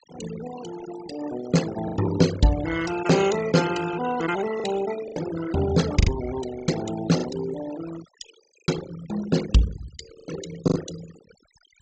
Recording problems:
treble missing; nothing above 8 kHz
noise reduction artefacts; signal-to-artefact ratio 11 dB
lost packets; 6% of the sound replaced, filled with the last packet

